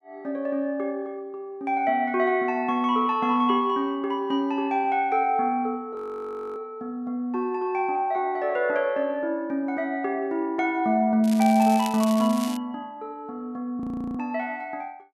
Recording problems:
audio freezing; at 6 s for 0.5 s and at 14 s
crackle; from 11 to 13 s; loose cable, SNR 13 dB

